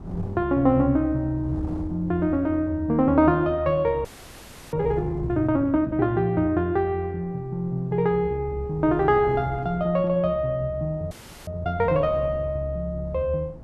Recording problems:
wind on the microphone; below 280 Hz, SNR 18 dB
audio freezing; at 4 s for 0.5 s and at 11 s

